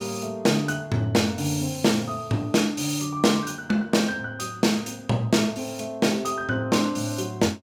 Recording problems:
none

